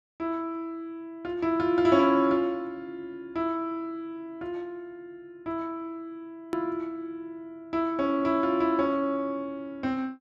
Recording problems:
click at an edit; at 6.5 s

